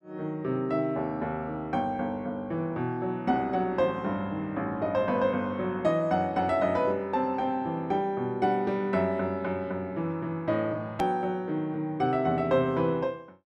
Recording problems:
hard cut with a click; at 11 s

